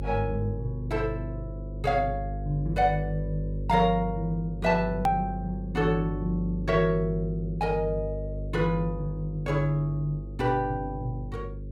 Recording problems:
electrical hum; 50 Hz, harmonics up to 550 Hz, SNR 7 dB
click at an edit; at 5 s

